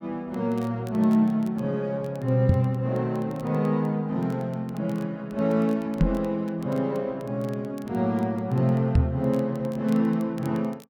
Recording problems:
crackle; vinyl, SNR 29 dB
microphone bump; at 2.5 s, at 6 s and at 9 s; peak +9 dB vs average level

